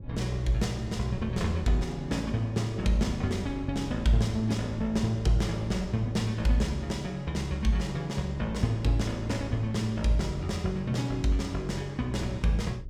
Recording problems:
wind noise; below 120 Hz, SNR 17 dB

